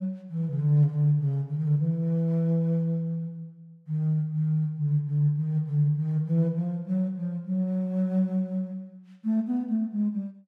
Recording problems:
none

